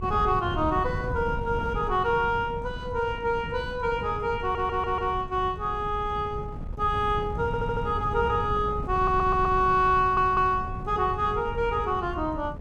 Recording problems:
wind noise; below 170 Hz, SNR 10 dB
audio stuttering; 4 times, first at 4.5 s

